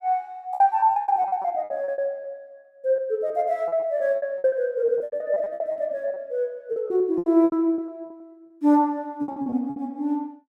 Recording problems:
lost packets; 18% of the sound replaced, filled with repeated pitch periods

